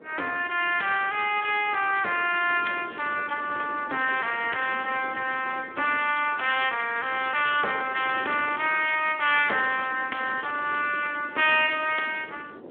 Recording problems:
telephone audio; 320 Hz to 3.4 kHz, Speex
wind noise; below 550 Hz, SNR 18 dB

